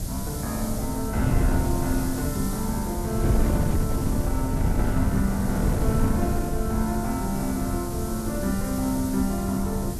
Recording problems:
hiss; SNR 10 dB
wind noise; below 170 Hz, SNR -1 dB

